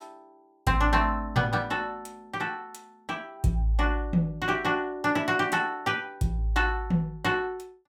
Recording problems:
none

